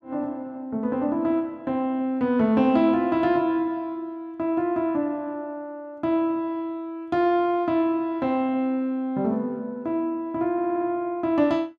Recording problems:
audio stuttering; at 11 s

